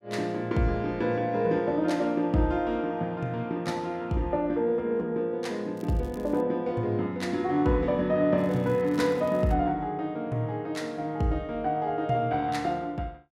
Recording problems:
crackle; at 6 s and from 8.5 to 9.5 s; loose cable, SNR 28 dB

